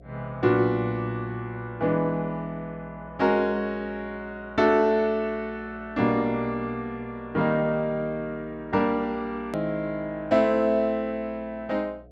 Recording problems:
hum; 60 Hz, harmonics up to 720 Hz, SNR 23 dB
edit click; at 9.5 s

